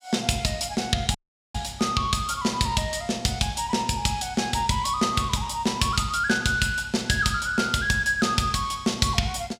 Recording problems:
dropout; at 1 s

